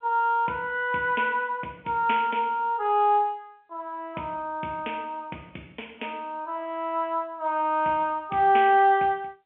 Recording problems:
phone line; 240 Hz to 3.3 kHz, G.711

